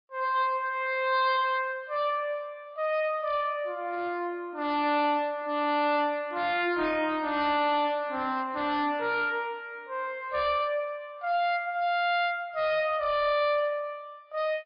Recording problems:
lossy codec; MP3, log-spectral distance 2 dB, nothing above 4.2 kHz
distorted audio; hard clipping, signal-to-distortion ratio 10 dB

